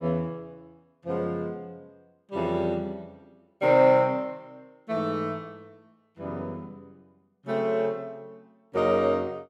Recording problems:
none

